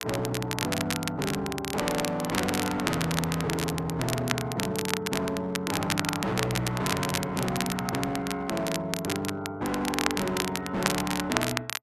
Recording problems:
distortion; hard clipping, signal-to-distortion ratio 7 dB
crackle; vinyl, SNR 3 dB

